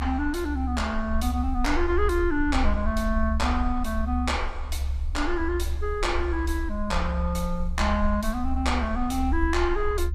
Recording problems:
rumble; below 70 Hz, SNR 3 dB

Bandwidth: 15 kHz